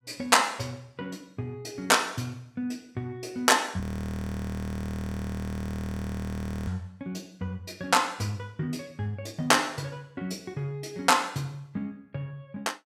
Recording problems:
audio freezing; at 4 s for 3 s

